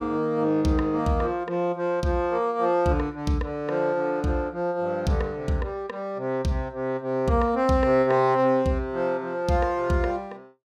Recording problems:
none

